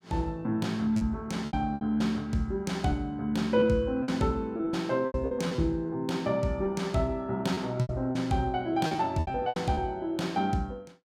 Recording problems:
packet loss; 9% of the sound replaced, filled with repeated pitch periods

